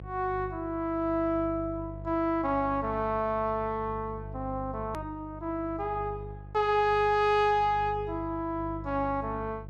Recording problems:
hum; 50 Hz, harmonics up to 700 Hz, SNR 13 dB
hard cut with a click; at 5 s

